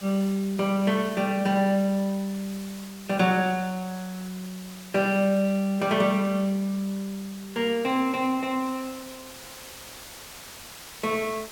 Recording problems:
background hiss; slope -1 dB per octave, SNR 17 dB

